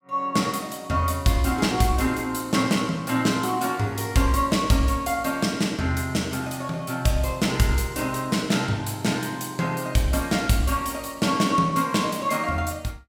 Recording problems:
none

